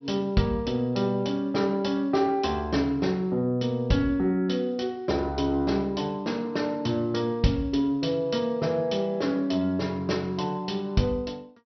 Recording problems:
treble missing; nothing above 5.8 kHz

